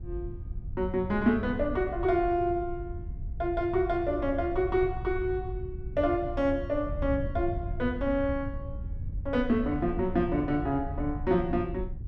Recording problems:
wind noise; below 96 Hz, SNR 9 dB

